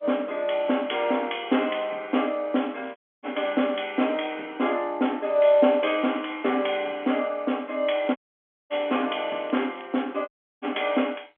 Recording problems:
telephone audio; 220 Hz to 3.4 kHz, G.711
crackle; at 2.5 s and from 8 to 10 s; loose cable, SNR 27 dB
audio cutting out; at 3 s, at 8 s for 0.5 s and at 10 s

